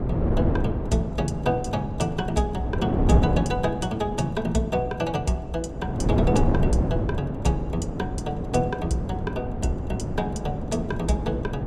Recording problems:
wind noise; below 310 Hz, SNR 1 dB

